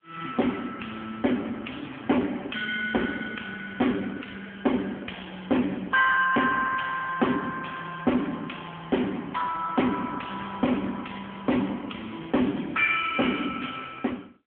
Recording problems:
phone line; 170 Hz to 3.4 kHz, AMR-NB
distortion; hard clipping, signal-to-distortion ratio 11 dB

